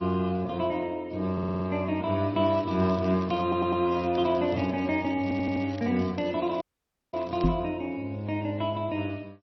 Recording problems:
codec artefacts; MP2, then MP3, log-spectral distance 2 dB, nothing above 5.7 kHz
audio stuttering; at 1.5 s, at 3.5 s and at 5 s
crackling; from 2.5 to 4.5 s and from 5 to 7.5 s; loose cable, SNR 23 dB
audio cutting out; at 6.5 s for 0.5 s
knock on the microphone; at 7.5 s; peak +7 dB vs average level

